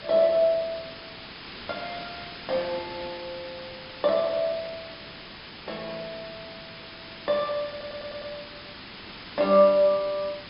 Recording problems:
treble missing; nothing above 5.5 kHz
background hiss; SNR 14 dB
stutter; at 7.5 s

